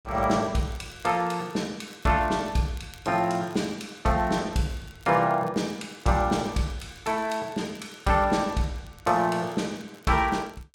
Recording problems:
crackling; vinyl, SNR 28 dB

